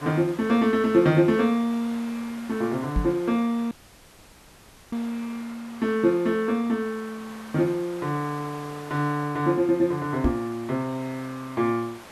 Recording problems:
hiss; SNR 19 dB
knock on the microphone; at 3 s and at 10 s; peak +4 dB vs average level
dropout; at 3.5 s for 1 s

